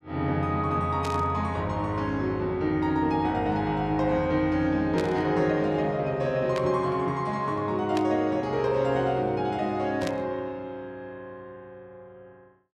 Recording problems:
static burst; 5 times, first at 1 s; peak -6 dB vs average level

